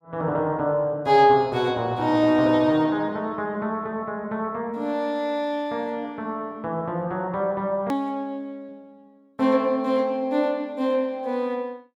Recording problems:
edit click; at 8 s

